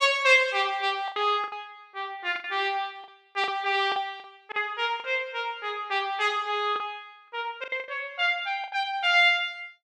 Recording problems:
lost packets; 8% of the sound replaced, filled with the last packet

